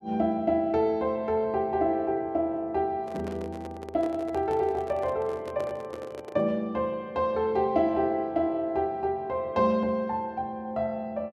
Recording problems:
microphone handling noise; from 3 to 6.5 s; peak -7 dB vs average level

